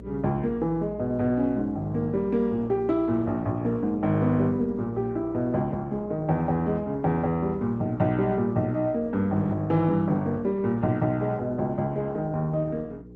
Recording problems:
lossy compression; Opus, log-spectral distance 2 dB
hum; 60 Hz, harmonics up to 480 Hz, SNR 17 dB

